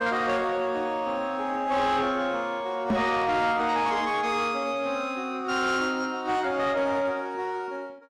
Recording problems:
distortion; soft clipping, signal-to-distortion ratio 12 dB
microphone bump; at 3 s; peak +5 dB vs average level

